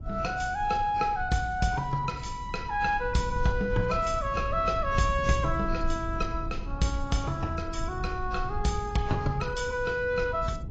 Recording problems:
lossy codec; AAC, log-spectral distance 2 dB, nothing above 7.3 kHz
rumble; below 86 Hz, SNR 9 dB

